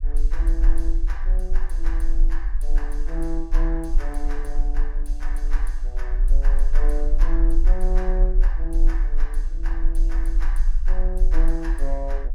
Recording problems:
low-frequency rumble; below 36 Hz, strongest tone 20 Hz, SNR -10 dB

